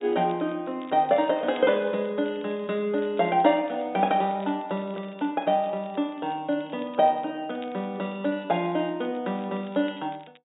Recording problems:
treble missing; nothing above 4 kHz
crackling; vinyl, SNR 28 dB

